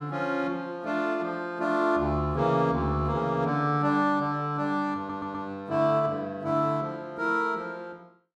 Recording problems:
stutter; at 5 s

